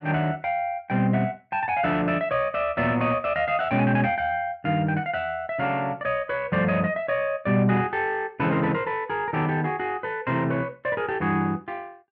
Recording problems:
none

